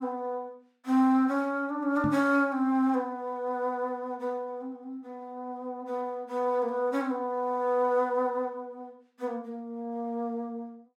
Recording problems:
microphone thump; at 2 s; peak +2 dB vs average level

